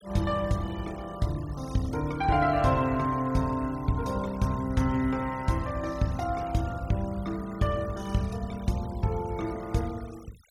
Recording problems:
denoising artefacts; signal-to-artefact ratio 21 dB

